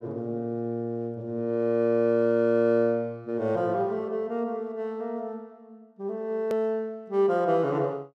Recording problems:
click at an edit; at 6.5 s

